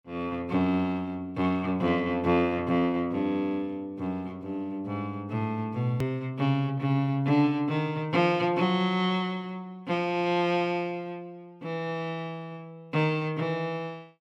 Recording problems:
click at an edit; at 6 s

